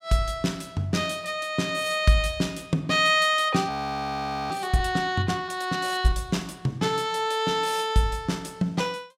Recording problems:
frozen audio; at 3.5 s for 1 s

